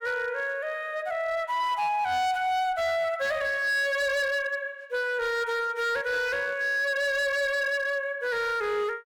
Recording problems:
distortion; hard clipping, signal-to-distortion ratio 10 dB

